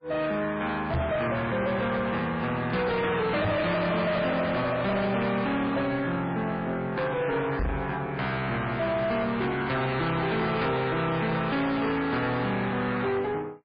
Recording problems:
lossy codec; MP3, log-spectral distance 3 dB, nothing above 4.8 kHz
distorted audio; soft clipping, signal-to-distortion ratio 7 dB
knock on the microphone; at 1 s, at 3.5 s and at 7.5 s; peak +5 dB vs average level

